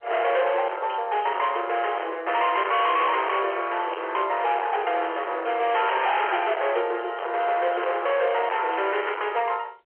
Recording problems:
telephone audio; 340 Hz to 3.3 kHz, G.711
distortion; hard clipping, uneven, signal-to-distortion ratio 7 dB

